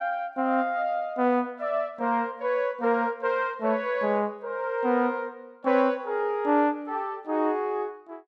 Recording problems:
none

